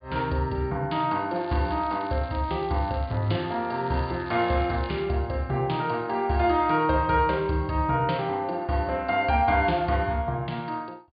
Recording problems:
treble cut off; nothing above 4.8 kHz
crackle; from 1.5 to 5 s; loose cable, SNR 24 dB

